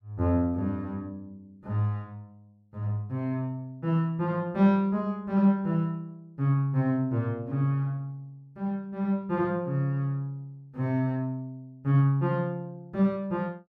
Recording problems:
none

